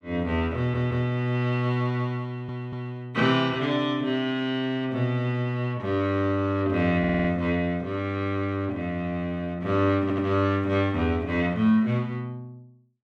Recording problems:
audio stuttering; 4 times, first at 0.5 s

